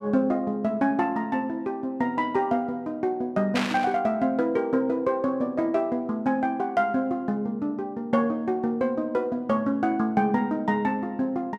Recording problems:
static burst; at 3.5 s; peak +2 dB vs average level

